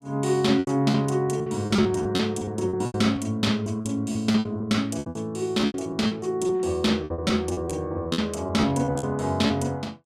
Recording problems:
lost packets; 16% of the sound replaced, filled with repeated pitch periods

